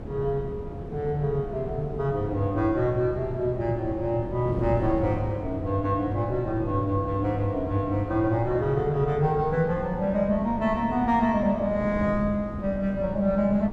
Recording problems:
wind on the microphone; below 300 Hz, SNR 10 dB

